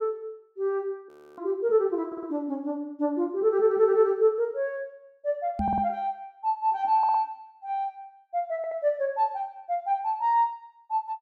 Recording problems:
frozen audio; at 1 s
stutter; 4 times, first at 2 s
knock on the microphone; at 5.5 s; peak 0 dB vs average level

